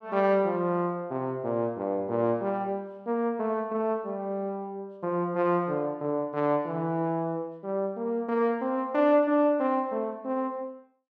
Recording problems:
none

